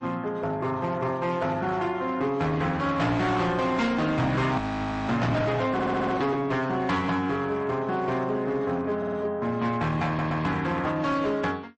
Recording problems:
lossy compression; MP3, then MP3, log-spectral distance 2 dB, nothing above 8.2 kHz
distortion; hard clipping, signal-to-distortion ratio 10 dB
audio freezing; at 4.5 s for 0.5 s
stutter; at 5.5 s, at 9 s and at 10 s

